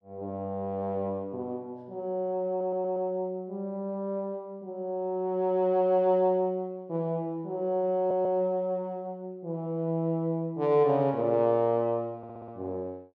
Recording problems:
stutter; at 2.5 s, at 8 s and at 12 s

